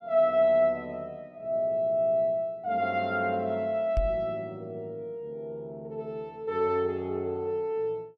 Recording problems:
knock on the microphone; at 4 s; peak +2 dB vs average level

